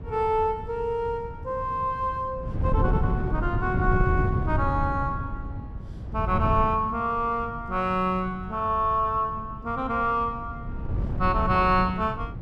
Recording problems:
wind noise; below 150 Hz, SNR 5 dB

